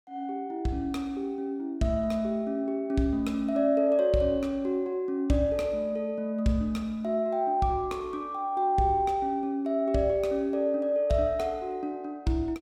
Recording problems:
none

